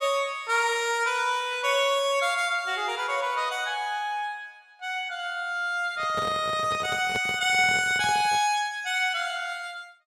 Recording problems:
handling noise; from 6 to 8.5 s; peak -4 dB vs average level

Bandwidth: 17 kHz